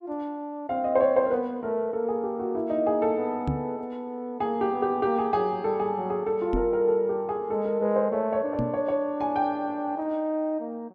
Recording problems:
knock on the microphone; at 3.5 s, at 6.5 s and at 8.5 s; peak +2 dB vs average level

